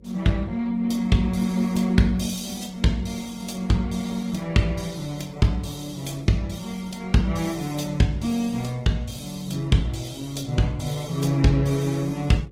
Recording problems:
lossy compression; Opus, log-spectral distance 4 dB, nothing above 16 kHz
hum; 50 Hz, harmonics up to 550 Hz, SNR 27 dB

